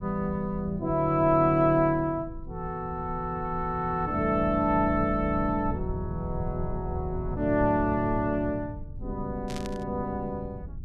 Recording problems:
low-frequency rumble; below 130 Hz, SNR 11 dB
static burst; at 9.5 s; peak -9 dB vs average level

